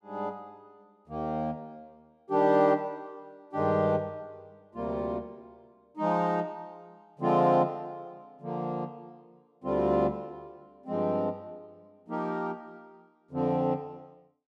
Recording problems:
none

